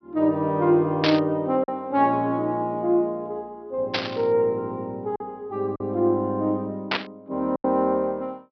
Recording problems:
treble cut off; nothing above 5.5 kHz
packet loss; 2% of the sound replaced, filled with silence
static burst; at 1 s, at 4 s and at 7 s; peak +4 dB vs average level

